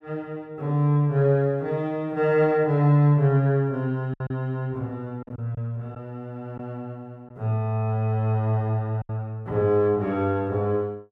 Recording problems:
packet loss; 3% of the sound replaced, filled with silence

